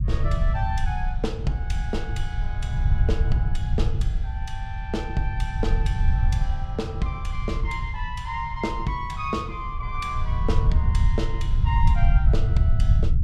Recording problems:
rumble; below 84 Hz, SNR -6 dB

